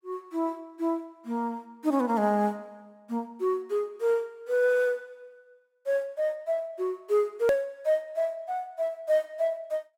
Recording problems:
click at an edit; at 7.5 s

